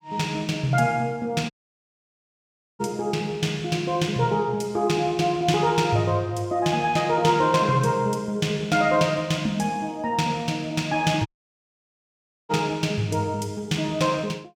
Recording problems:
audio cutting out; at 1.5 s for 1.5 s and at 11 s for 1 s

